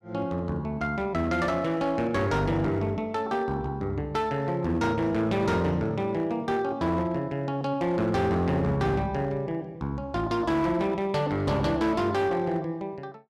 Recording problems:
distorted audio; hard clipping, uneven, signal-to-distortion ratio 11 dB

